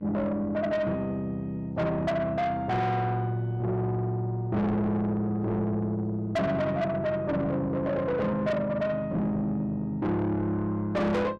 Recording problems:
distortion; soft clipping, signal-to-distortion ratio 7 dB
electrical hum; 50 Hz, harmonics up to 1.6 kHz, SNR 25 dB

